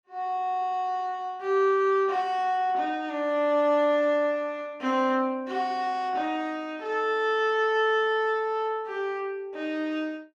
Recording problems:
none

